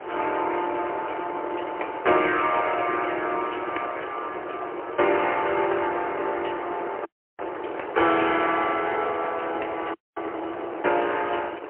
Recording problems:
telephone audio; 300 Hz to 3.1 kHz, AMR-NB, then MP3
wind on the microphone; below 1 kHz, SNR 10 dB
frozen audio; at 7 s and at 10 s

